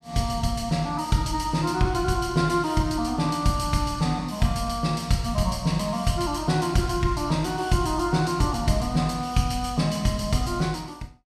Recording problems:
none

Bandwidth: 14.5 kHz